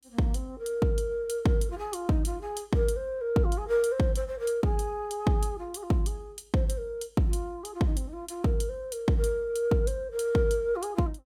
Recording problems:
none

